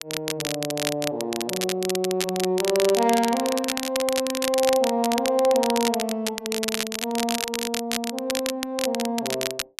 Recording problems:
crackle; vinyl, SNR 4 dB

